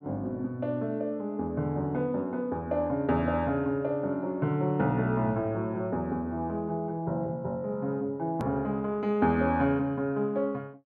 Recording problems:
click at an edit; at 8.5 s

